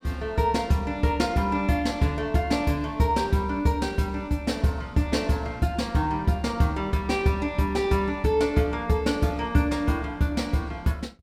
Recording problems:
none

